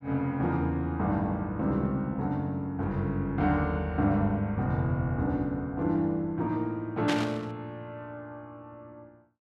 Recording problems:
burst of static; at 7 s; peak +1 dB vs average level

